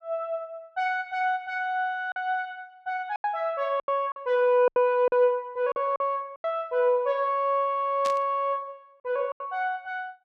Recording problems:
lost packets; 6% of the sound replaced, filled with silence
static burst; at 8 s; peak -6 dB vs average level

